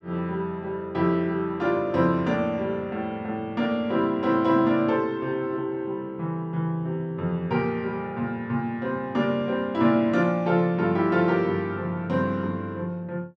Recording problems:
none

